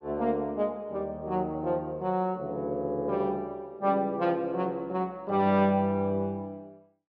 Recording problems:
treble missing; nothing above 6.4 kHz

